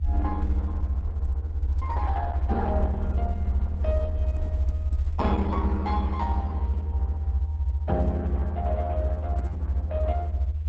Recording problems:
codec artefacts; Opus, log-spectral distance 2 dB
rumble; below 78 Hz, strongest tone 76 Hz, SNR -5 dB

